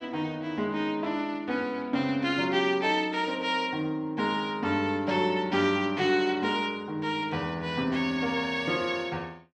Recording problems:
none

